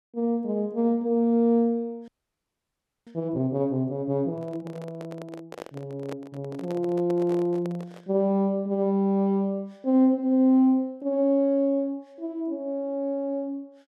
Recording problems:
audio freezing; at 2 s for 1 s
microphone handling noise; from 4.5 to 8 s; peak -8 dB vs average level

